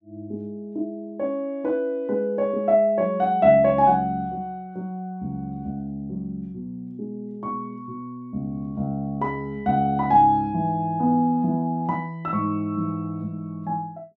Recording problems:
none

